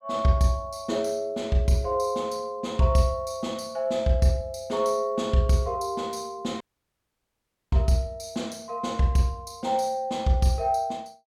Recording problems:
audio cutting out; at 6.5 s for 1 s

